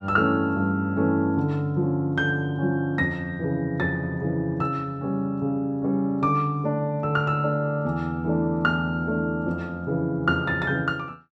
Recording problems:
none

